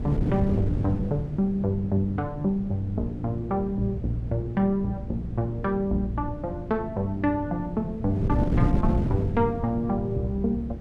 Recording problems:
wind noise; below 210 Hz, SNR 4 dB

